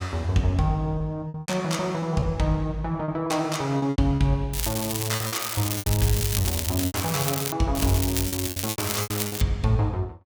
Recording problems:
lost packets; 10% of the sound replaced, filled with repeated pitch periods
crackling; from 4.5 to 7.5 s and from 8 to 9.5 s; loose cable, SNR 3 dB

